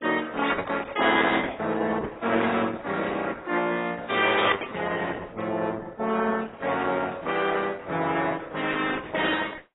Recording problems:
lossy compression; Opus, then AAC, log-spectral distance 6 dB, nothing above 3.7 kHz

